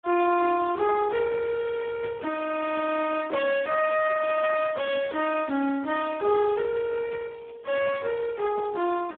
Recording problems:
telephone audio; 240 Hz to 3.3 kHz, Speex

